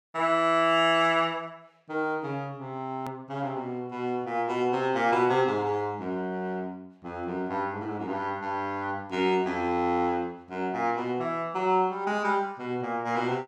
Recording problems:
click at an edit; at 3 s

